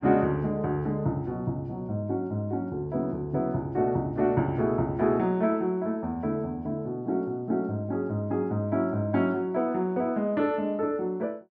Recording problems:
none

